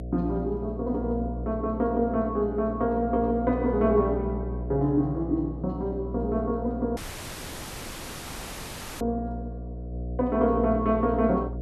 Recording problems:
hum; 60 Hz, harmonics up to 720 Hz, SNR 8 dB
dropout; at 7 s for 2 s

